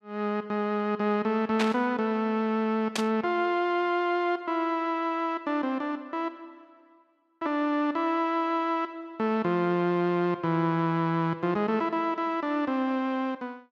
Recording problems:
static burst; at 1.5 s and at 3 s; peak +2 dB vs average level

